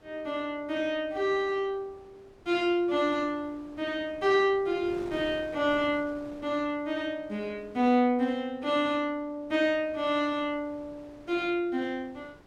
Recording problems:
wind on the microphone; below 890 Hz, SNR 23 dB

